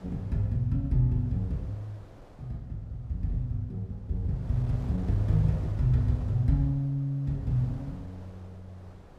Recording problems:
wind on the microphone; below 600 Hz, SNR 20 dB

